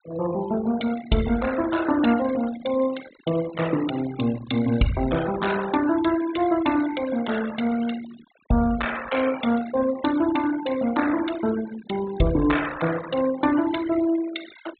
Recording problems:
low-pass filter; nothing above 4 kHz
denoising artefacts; signal-to-artefact ratio 14 dB

